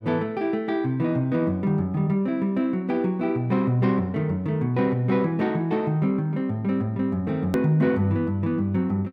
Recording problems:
hard cut with a click; at 7.5 s

